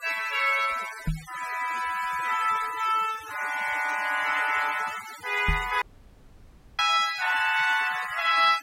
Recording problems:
noise reduction artefacts; signal-to-artefact ratio 15 dB
knock on the microphone; at 1 s and at 5.5 s; peak +2 dB vs average level
audio cutting out; at 6 s for 1 s

